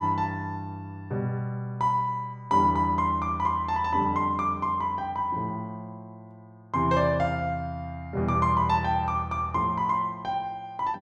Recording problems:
none

